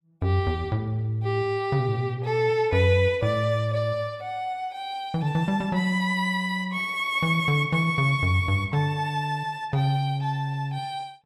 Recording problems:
none

